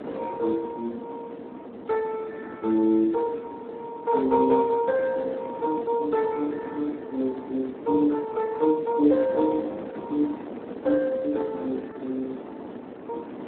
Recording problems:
phone line; 220 Hz to 2.1 kHz, Speex
wind noise; below 550 Hz, SNR 13 dB

